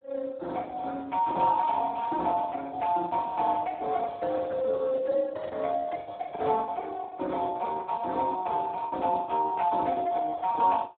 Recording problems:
telephone audio; 260 Hz to 2.1 kHz, Speex
lost packets; 10% of the sound replaced, filled with the last packet
burst of static; at 2 s and at 5.5 s; peak -17 dB vs average level

